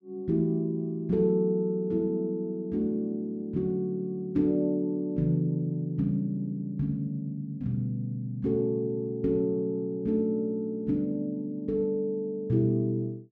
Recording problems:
none

